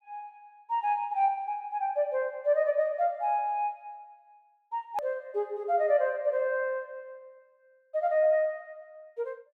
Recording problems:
edit click; at 5 s

